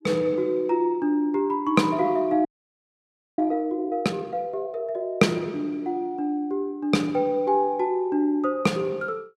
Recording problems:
audio freezing; at 2.5 s for 1 s

